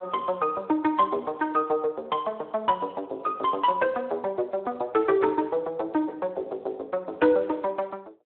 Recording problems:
phone line; 280 Hz to 3.7 kHz, Speex

